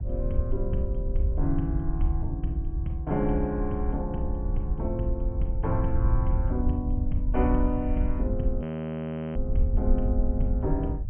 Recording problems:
treble cut off; nothing above 3.2 kHz
low-frequency rumble; below 76 Hz, SNR 3 dB
wind on the microphone; below 80 Hz, SNR 1 dB
audio freezing; at 8.5 s for 0.5 s

